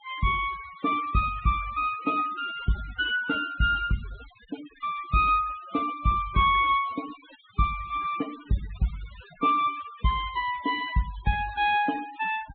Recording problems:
treble missing; nothing above 4 kHz
denoising artefacts; signal-to-artefact ratio 18 dB

